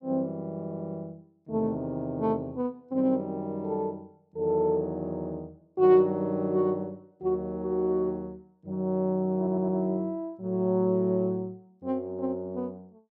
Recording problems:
audio stuttering; at 0.5 s and at 9.5 s

